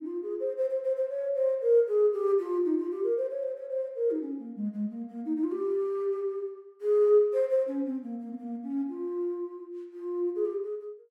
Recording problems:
none

